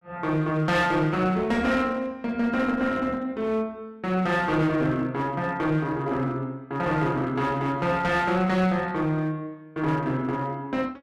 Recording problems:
distortion; hard clipping, uneven, signal-to-distortion ratio 11 dB

